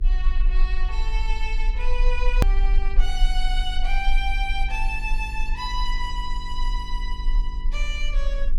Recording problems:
hum; 50 Hz, harmonics up to 450 Hz, SNR 11 dB
rumble; below 38 Hz, strongest tone 28 Hz, SNR -4 dB
edit click; at 2.5 s

